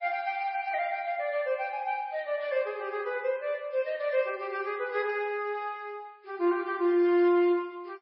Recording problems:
codec artefacts; MP3, log-spectral distance 2 dB, nothing above 5.2 kHz

